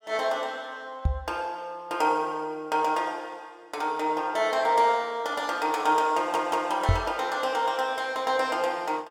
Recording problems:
microphone bump; at 1 s and at 7 s; peak +6 dB vs average level
audio stuttering; at 6 s

